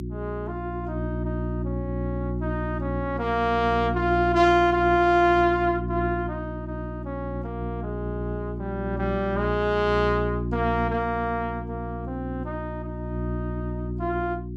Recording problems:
hum; 60 Hz, harmonics up to 360 Hz, SNR 6 dB

